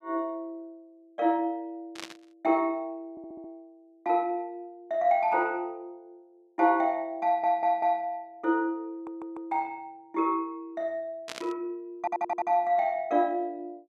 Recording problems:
burst of static; at 2 s and at 11 s; peak -5 dB vs average level
stutter; 4 times, first at 3 s

